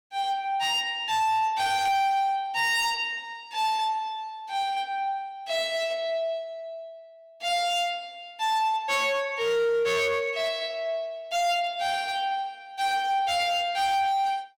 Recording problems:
distortion; hard clipping, signal-to-distortion ratio 11 dB

